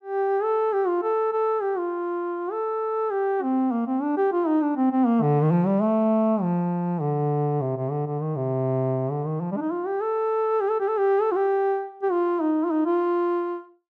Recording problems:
none

